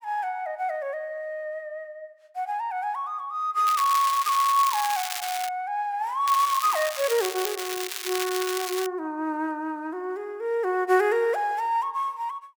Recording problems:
crackle; from 3.5 to 5.5 s and from 6.5 to 9 s; loose cable, SNR 6 dB

